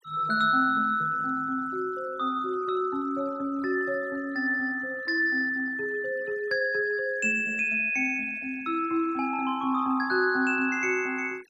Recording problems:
noise reduction artefacts; signal-to-artefact ratio 25 dB

